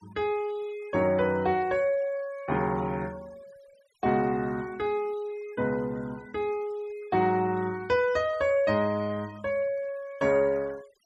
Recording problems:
noise reduction artefacts; signal-to-artefact ratio 25 dB

